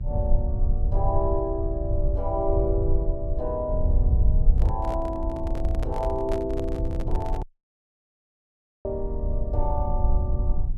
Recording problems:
hum; 50 Hz, harmonics up to 650 Hz, SNR 18 dB
rumble; below 66 Hz, SNR -3 dB
handling noise; from 4.5 to 7.5 s; peak -1 dB vs average level
dropout; at 7.5 s for 1.5 s

